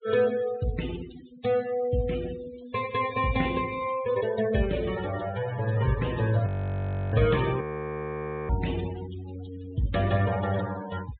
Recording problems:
treble cut off; nothing above 4 kHz
noise reduction artefacts; signal-to-artefact ratio 14 dB
frozen audio; at 6.5 s for 0.5 s and at 7.5 s for 1 s

